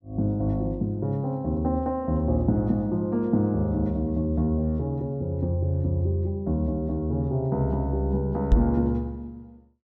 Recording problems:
microphone thump; at 8.5 s; peak +9 dB vs average level

